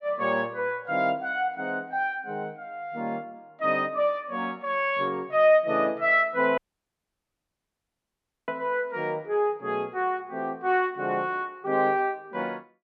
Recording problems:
dropout; at 6.5 s for 2 s

